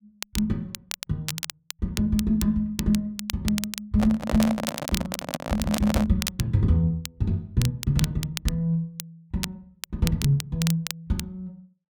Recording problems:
crackle; vinyl, SNR 9 dB
handling noise; from 4 to 6 s; peak +2 dB vs average level

